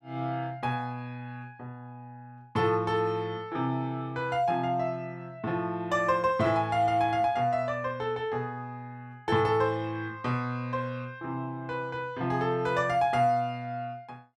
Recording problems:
none

